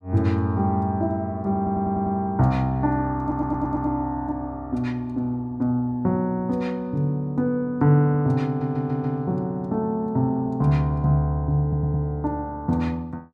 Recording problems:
stutter; 4 times, first at 1.5 s

